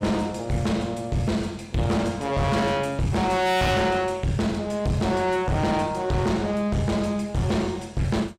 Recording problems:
distorted audio; soft clipping, signal-to-distortion ratio 7 dB

